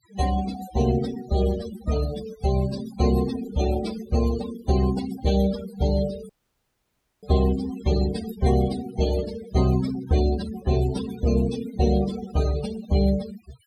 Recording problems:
noise reduction artefacts; signal-to-artefact ratio 12 dB
dropout; at 6.5 s for 1 s

